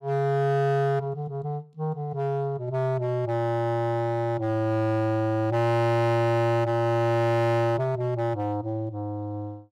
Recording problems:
distorted audio; hard clipping, signal-to-distortion ratio 7 dB

